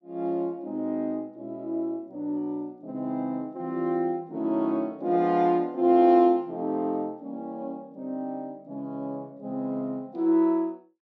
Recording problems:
none

